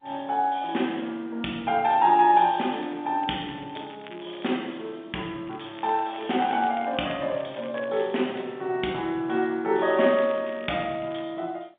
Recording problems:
telephone audio; 190 Hz to 3.6 kHz, G.711
crackle; from 3 to 4.5 s, from 5.5 to 8 s and from 10 to 11 s; loose cable, SNR 22 dB

